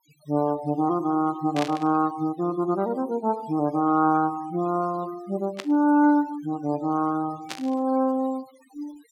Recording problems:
denoising artefacts; signal-to-artefact ratio 23 dB
burst of static; at 1.5 s, at 5.5 s and at 7.5 s; peak -3 dB vs average level

